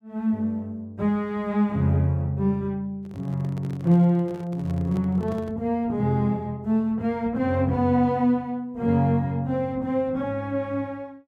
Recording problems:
microphone handling noise; from 3 to 5.5 s; peak -11 dB vs average level

